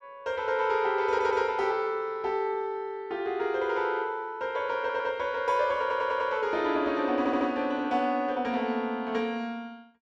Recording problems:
stutter; 4 times, first at 1 s

